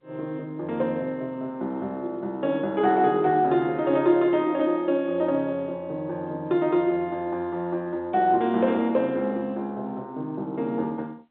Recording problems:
telephone audio; 190 Hz to 3.8 kHz, G.711

